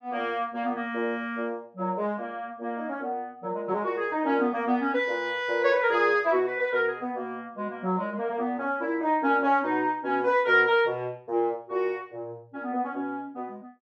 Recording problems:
none

